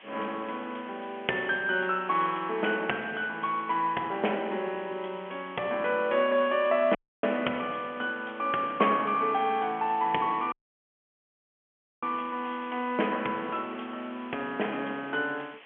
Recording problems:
telephone audio; 240 Hz to 3.2 kHz, G.711
hiss; SNR 21 dB
audio cutting out; at 7 s and at 11 s for 1.5 s

